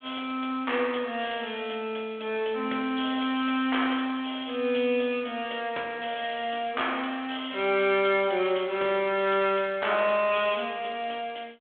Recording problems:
phone line; 280 Hz to 3.5 kHz, G.726

